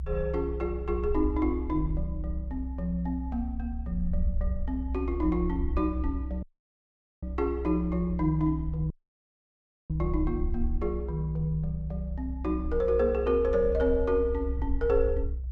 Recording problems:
low-frequency rumble; below 64 Hz, strongest tone 64 Hz, SNR 5 dB
audio cutting out; at 6.5 s for 1 s and at 9 s for 1 s

